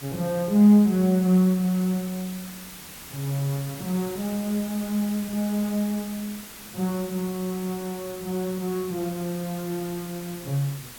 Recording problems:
hiss; slope -1 dB per octave, SNR 14 dB

